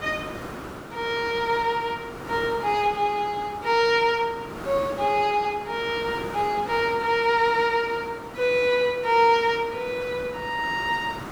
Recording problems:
background hiss; SNR 14 dB

